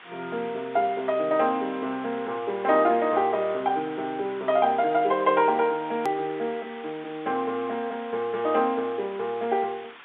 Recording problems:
telephone audio; 240 Hz to 3.8 kHz, G.711
background hiss; SNR 19 dB
edit click; at 6 s

